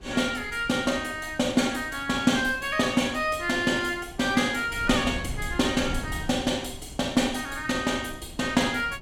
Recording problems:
wind noise; below 160 Hz, SNR 16 dB

